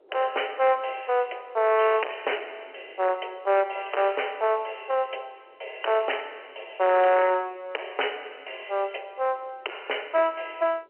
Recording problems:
telephone audio; 320 Hz to 3.1 kHz, G.711
distortion; hard clipping, signal-to-distortion ratio 9 dB
wind noise; below 1.8 kHz, SNR 25 dB

